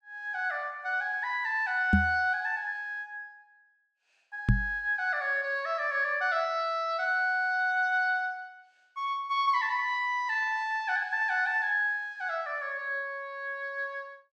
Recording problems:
knock on the microphone; at 2 s and at 4.5 s; peak +9 dB vs average level

